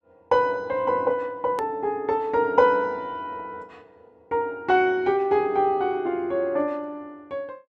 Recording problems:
edit click; at 1.5 s

